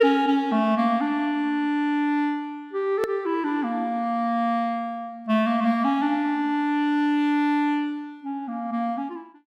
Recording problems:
click at an edit; at 3 s

